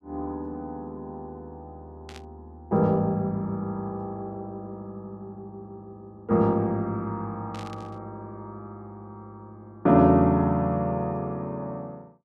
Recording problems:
burst of static; at 2 s and at 7.5 s; peak -14 dB vs average level

